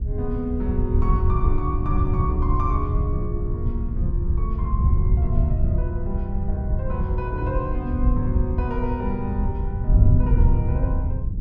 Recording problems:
wind on the microphone; below 100 Hz, SNR -6 dB

